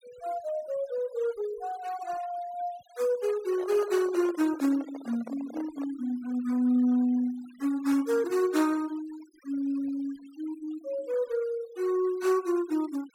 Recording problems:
noise reduction artefacts; signal-to-artefact ratio 21 dB
handling noise; from 3.5 to 6 s; peak -9 dB vs average level

